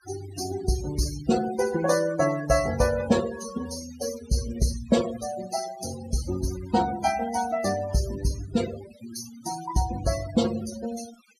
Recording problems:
noise reduction artefacts; signal-to-artefact ratio 12 dB

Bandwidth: 14.5 kHz